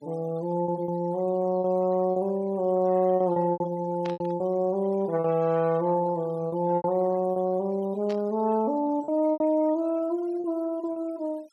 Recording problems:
denoising artefacts; signal-to-artefact ratio 26 dB
packet loss; 7% of the sound replaced, filled with repeated pitch periods
static burst; at 4 s and at 8 s; peak -11 dB vs average level

